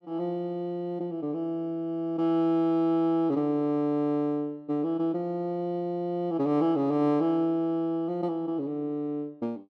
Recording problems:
none

